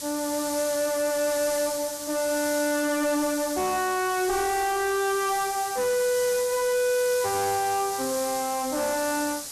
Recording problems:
distortion; soft clipping, signal-to-distortion ratio 7 dB
background hiss; SNR 7 dB

